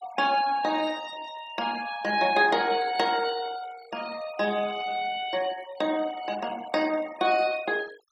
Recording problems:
noise reduction artefacts; signal-to-artefact ratio 18 dB

